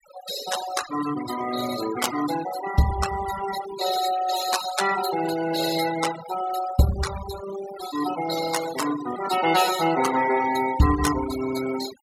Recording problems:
noise reduction artefacts; signal-to-artefact ratio 9 dB

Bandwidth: 17 kHz